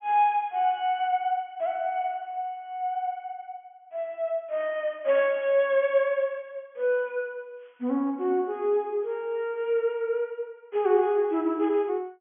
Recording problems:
low-pass filter; nothing above 3.4 kHz

